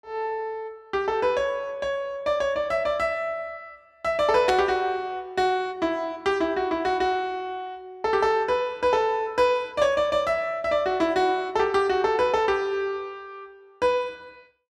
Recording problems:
burst of static; at 4.5 s; peak -1 dB vs average level

